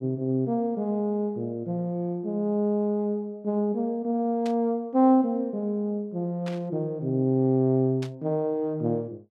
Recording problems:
burst of static; at 4.5 s, at 6.5 s and at 8 s; peak -10 dB vs average level

